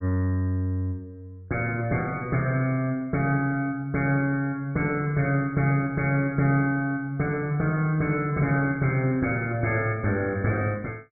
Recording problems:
none

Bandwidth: 2.5 kHz